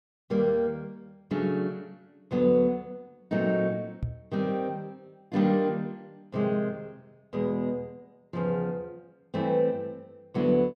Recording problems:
knock on the microphone; at 4 s; peak 0 dB vs average level

